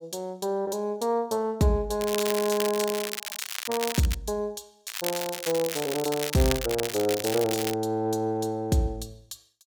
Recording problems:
crackle; from 2 to 4 s and from 5 to 8 s; loose cable, SNR 5 dB

